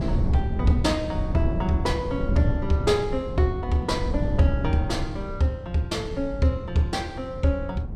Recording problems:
wind noise; below 150 Hz, SNR 4 dB

